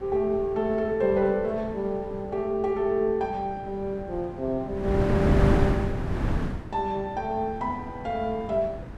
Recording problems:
wind noise; below 300 Hz, SNR 1 dB

